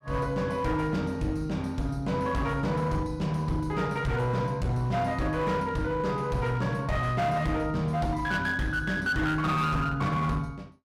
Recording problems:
distortion; hard clipping, signal-to-distortion ratio 11 dB

